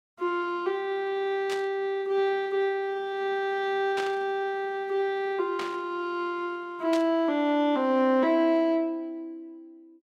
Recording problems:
static burst; 4 times, first at 1.5 s; peak -5 dB vs average level

